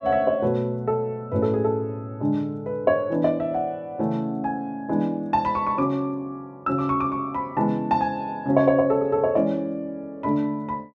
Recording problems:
none

